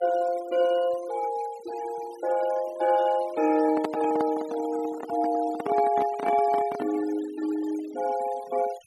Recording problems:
noise reduction artefacts; signal-to-artefact ratio 18 dB
microphone handling noise; from 3.5 to 7 s; peak 0 dB vs average level

